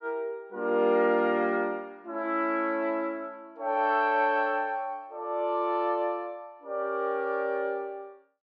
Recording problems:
none

